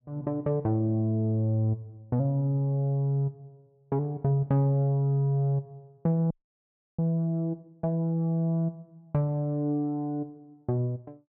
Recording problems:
audio freezing; at 6.5 s for 0.5 s

